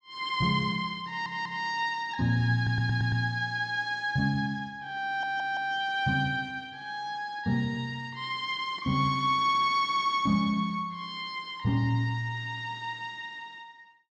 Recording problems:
stutter; at 1 s, at 2.5 s and at 5 s

